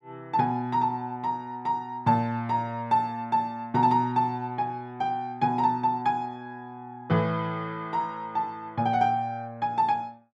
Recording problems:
none

